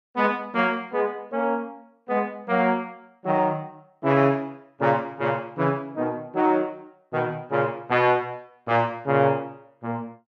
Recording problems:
none

